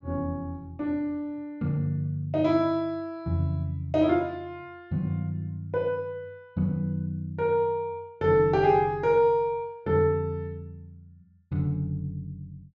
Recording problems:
treble missing; nothing above 7.7 kHz

